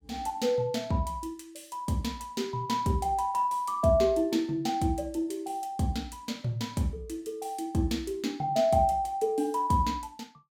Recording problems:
none

